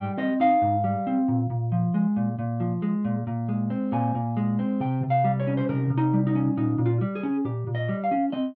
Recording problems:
none

